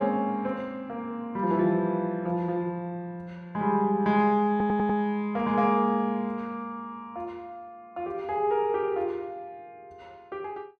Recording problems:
audio stuttering; at 4.5 s

